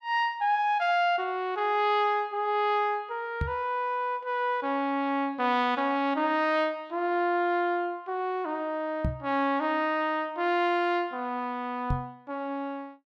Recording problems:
knock on the microphone; at 3.5 s, at 9 s and at 12 s; peak +2 dB vs average level

